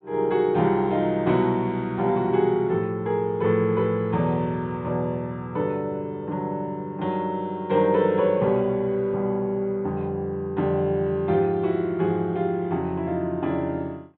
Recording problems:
treble missing; nothing above 4 kHz

